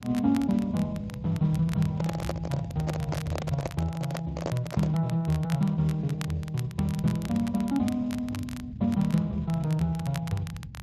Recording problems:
lossy codec; Speex, log-spectral distance 2 dB
low-frequency rumble; below 160 Hz, SNR 12 dB
crackling; vinyl, SNR 17 dB
handling noise; from 2 to 5 s; peak 0 dB vs average level

